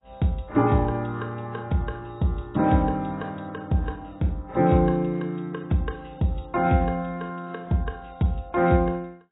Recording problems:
codec artefacts; AAC, log-spectral distance 4 dB, nothing above 3.7 kHz

